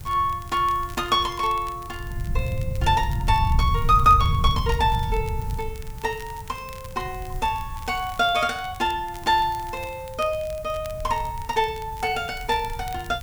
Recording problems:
background hiss; slope -3 dB per octave, SNR 23 dB
wind noise; below 110 Hz, SNR 5 dB
crackling; vinyl, SNR 23 dB

